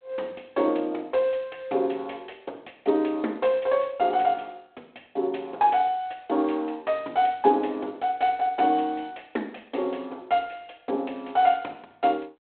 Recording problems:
phone line; 280 Hz to 3.8 kHz, G.726

